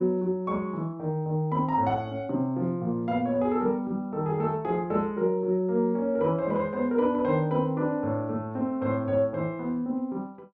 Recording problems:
none

